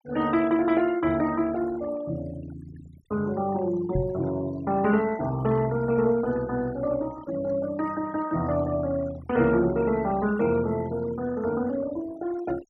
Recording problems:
denoising artefacts; signal-to-artefact ratio 17 dB
microphone bump; at 4 s; peak +1 dB vs average level

